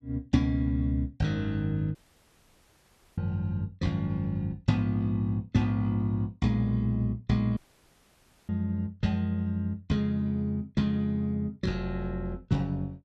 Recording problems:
dropout; at 2 s for 1 s and at 7.5 s for 1 s

